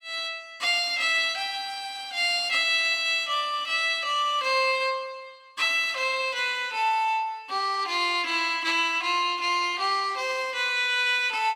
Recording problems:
none

